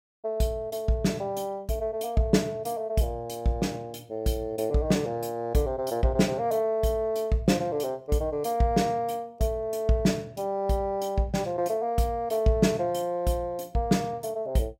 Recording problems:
none

